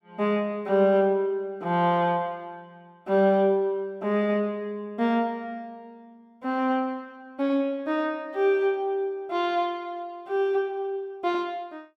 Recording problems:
none

